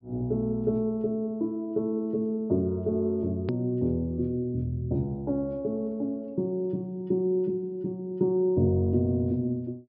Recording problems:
treble cut off; nothing above 5.1 kHz
click at an edit; at 3.5 s

